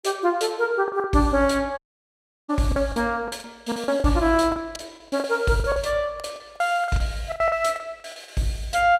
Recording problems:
packet loss; 14% of the sound replaced, filled with the last packet
dropout; at 2 s for 0.5 s

